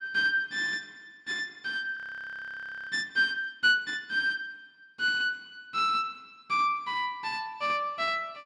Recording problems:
audio freezing; at 2 s for 1 s

